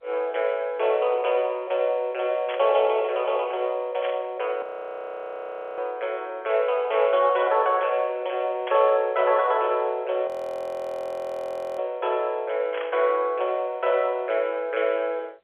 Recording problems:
phone line; 370 Hz to 3.4 kHz, G.711
burst of static; 4 times, first at 2.5 s; peak -6 dB vs average level
audio freezing; at 4.5 s for 1 s and at 10 s for 1.5 s

